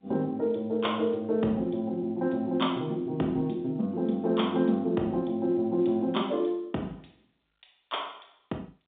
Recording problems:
telephone audio; 150 Hz to 3.7 kHz, G.711

